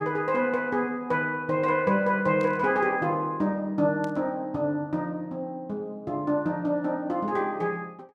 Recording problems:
static burst; at 2.5 s and at 4 s; peak -15 dB vs average level

